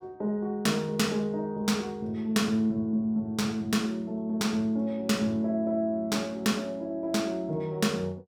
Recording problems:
none

